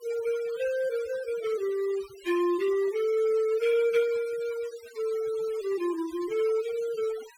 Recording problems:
noise reduction artefacts; signal-to-artefact ratio 18 dB

